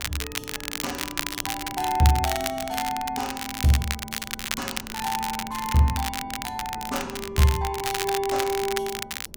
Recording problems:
wind on the microphone; below 300 Hz, SNR 19 dB
crackle; vinyl, SNR 5 dB

